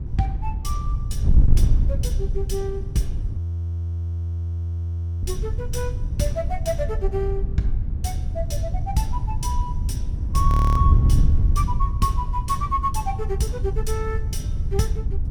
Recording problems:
wind on the microphone; below 88 Hz, SNR -4 dB
audio freezing; at 3.5 s for 2 s and at 10 s

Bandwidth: 18 kHz